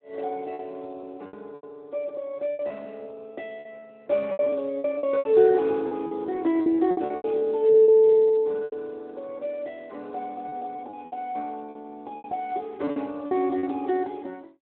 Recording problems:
phone line; 240 Hz to 3.5 kHz, Speex
lost packets; 12% of the sound replaced, filled with repeated pitch periods

